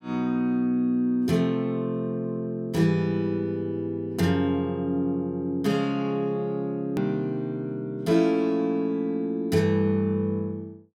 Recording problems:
hard cut with a click; at 7 s

